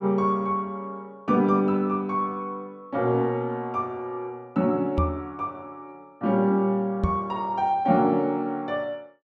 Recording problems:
microphone thump; at 5 s and at 7 s; peak +4 dB vs average level

